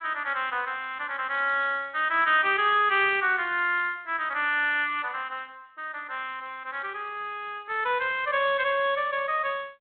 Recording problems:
phone line; 320 Hz to 3.5 kHz, G.726

